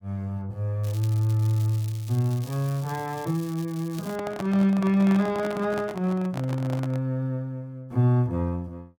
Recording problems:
crackle; from 1 to 4 s; loose cable, SNR 20 dB
microphone handling noise; from 4 to 7 s; peak -5 dB vs average level

